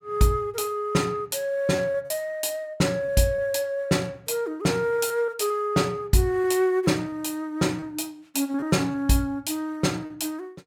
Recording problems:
packet loss; 4% of the sound replaced, filled with repeated pitch periods

